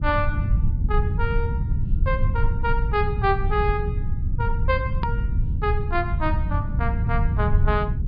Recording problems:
treble missing; nothing above 4.9 kHz
low-frequency rumble; below 98 Hz, SNR -3 dB
click at an edit; at 5 s

